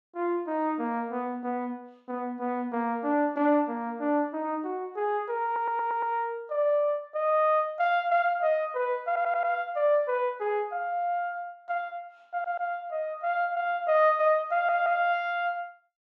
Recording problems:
audio stuttering; 4 times, first at 5.5 s

